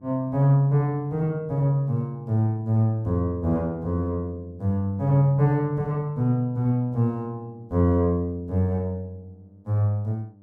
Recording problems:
hum; 50 Hz, harmonics up to 700 Hz, SNR 28 dB

